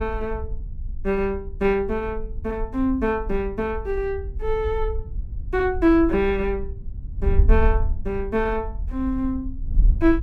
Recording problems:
wind noise; below 58 Hz, SNR 5 dB

